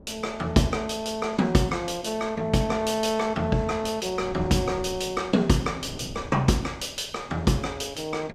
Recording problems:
wind noise; below 320 Hz, SNR 19 dB

